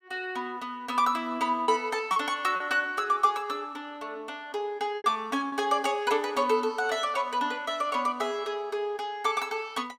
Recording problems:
lost packets; 2% of the sound replaced, filled with repeated pitch periods

